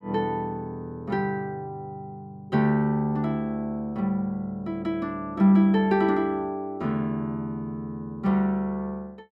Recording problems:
none

